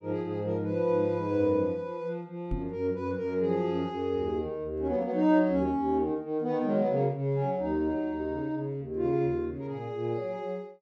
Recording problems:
knock on the microphone; at 2.5 s; peak -1 dB vs average level

